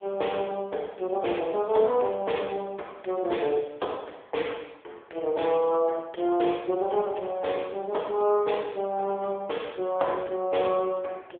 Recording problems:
phone line; 320 Hz to 3.6 kHz, AMR-NB

